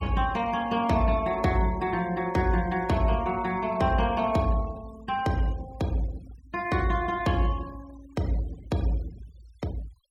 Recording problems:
denoising artefacts; signal-to-artefact ratio 22 dB

